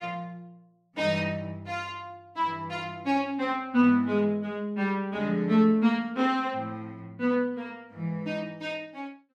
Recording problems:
none

